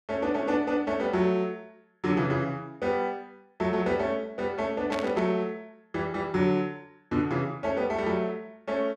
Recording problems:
burst of static; at 5 s; peak -4 dB vs average level

